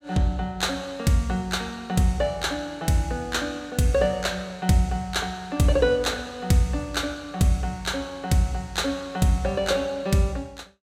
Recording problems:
none

